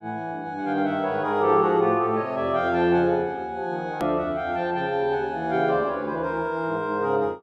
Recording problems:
edit click; at 4 s

